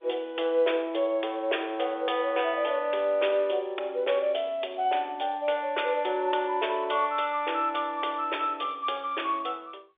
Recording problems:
phone line; 300 Hz to 3.6 kHz, G.711

